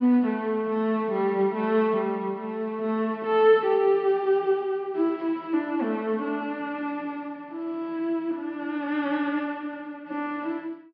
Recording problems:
low-pass filter; nothing above 5.5 kHz

